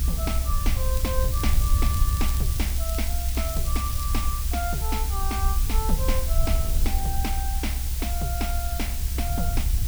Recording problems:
background hiss; slope +3 dB per octave, SNR 0 dB
low-frequency rumble; below 66 Hz, SNR -6 dB
wind on the microphone; below 140 Hz, SNR 13 dB
crackling; from 1 to 4 s; loose cable, SNR 8 dB

